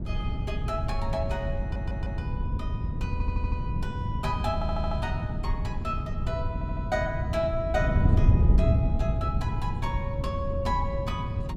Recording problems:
wind noise; below 130 Hz, SNR -4 dB
stutter; 4 times, first at 1.5 s

